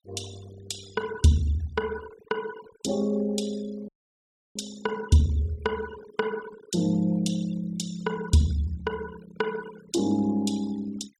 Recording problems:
noise reduction artefacts; signal-to-artefact ratio 19 dB
audio cutting out; at 4 s for 0.5 s

